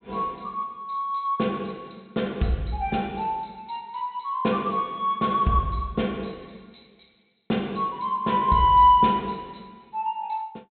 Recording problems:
treble missing; nothing above 4 kHz

